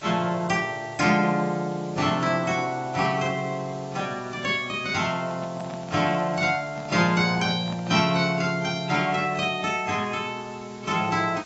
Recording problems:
lossy codec; AAC, log-spectral distance 7 dB, nothing above 7.6 kHz
hiss; slope -1 dB per octave, SNR 22 dB
handling noise; from 5 to 8 s; peak -9 dB vs average level

